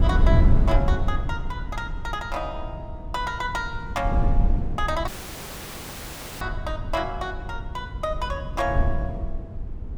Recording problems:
wind noise; below 82 Hz, SNR -2 dB
dropout; at 5 s for 1.5 s

